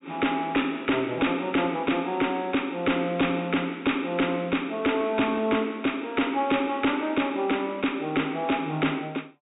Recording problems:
low-pass filter; nothing above 4 kHz
distortion; hard clipping, uneven, signal-to-distortion ratio 11 dB

